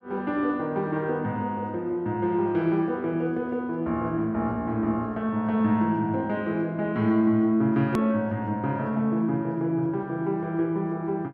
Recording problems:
edit click; at 8 s

